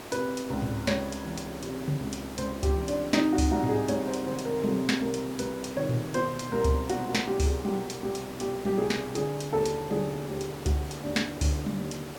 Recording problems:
background hiss; slope -5 dB per octave, SNR 13 dB

